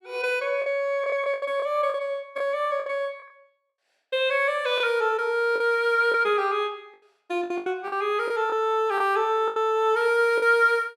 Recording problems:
packet loss; 8% of the sound replaced, filled with the last packet

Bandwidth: 16 kHz